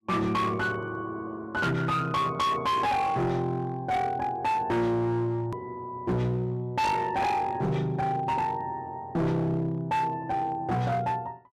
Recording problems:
distortion; hard clipping, signal-to-distortion ratio 8 dB
hard cut with a click; at 5.5 s

